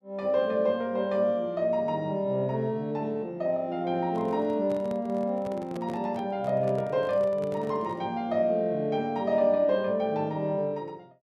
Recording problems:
microphone handling noise; from 4 to 8 s; peak -10 dB vs average level

